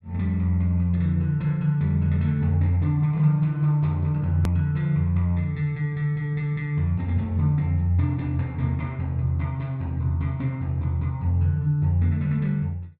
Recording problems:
click at an edit; at 4.5 s

